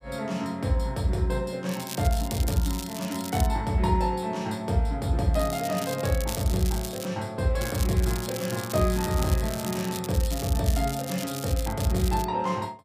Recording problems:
crackle; from 1.5 to 3.5 s, from 5.5 to 7 s and from 7.5 to 12 s; loose cable, SNR 10 dB

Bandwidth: 15 kHz